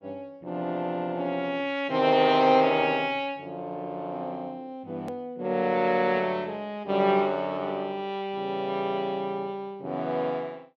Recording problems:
hard cut with a click; at 5 s

